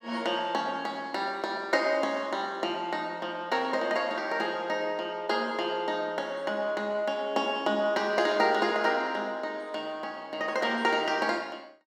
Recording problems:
none

